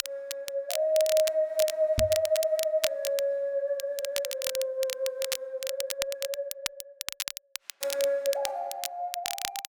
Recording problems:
crackle; vinyl, SNR 6 dB
microphone thump; at 2 s; peak +2 dB vs average level

